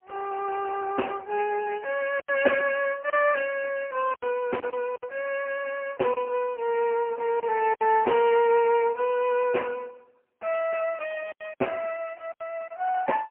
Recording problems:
phone line; 280 Hz to 2.8 kHz, AMR-NB, then MP3
lost packets; 5% of the sound replaced, filled with silence

